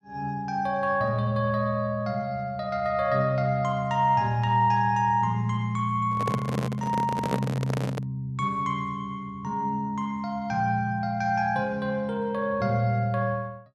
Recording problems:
microphone handling noise; from 6 to 8 s; peak +3 dB vs average level

